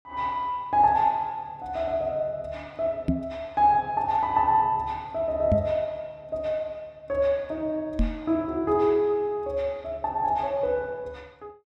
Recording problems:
knock on the microphone; at 3 s, at 5.5 s and at 8 s; peak +6 dB vs average level

